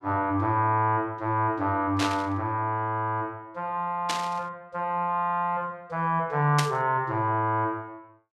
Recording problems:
burst of static; at 2 s, at 4 s and at 6.5 s; peak +4 dB vs average level

